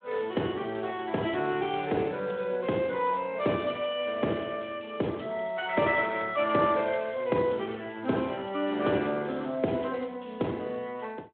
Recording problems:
telephone audio; 150 Hz to 3.7 kHz, Speex

